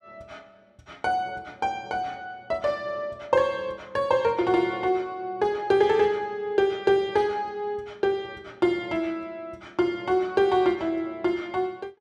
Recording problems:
none

